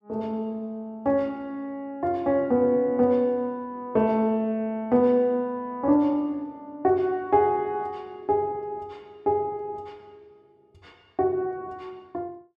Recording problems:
none

